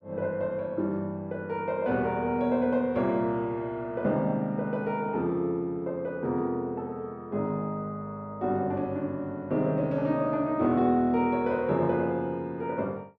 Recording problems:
none

